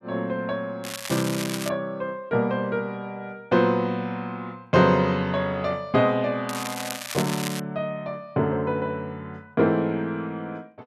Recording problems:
crackle; at 1 s and from 6.5 to 7.5 s; loose cable, SNR 7 dB

